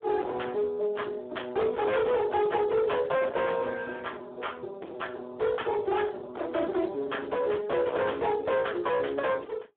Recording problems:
phone line; 260 Hz to 3.6 kHz, Speex
distortion; hard clipping, signal-to-distortion ratio 6 dB

